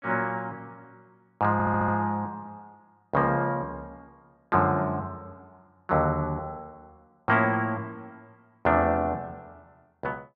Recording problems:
stutter; at 1.5 s

